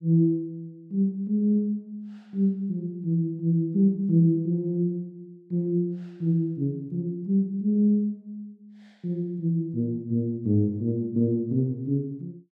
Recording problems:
none

